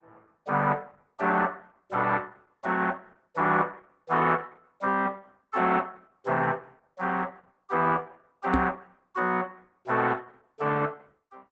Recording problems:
codec artefacts; Opus, log-spectral distance 4 dB, nothing above 7.6 kHz
microphone bump; at 8.5 s; peak +5 dB vs average level

